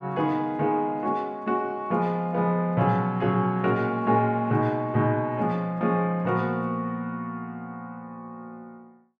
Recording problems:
none

